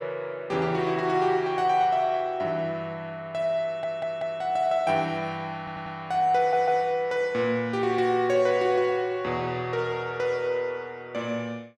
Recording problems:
audio stuttering; at 3.5 s, at 5.5 s and at 6.5 s

